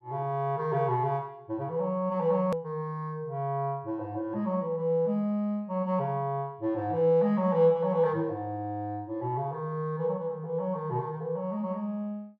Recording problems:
hard cut with a click; at 2.5 s

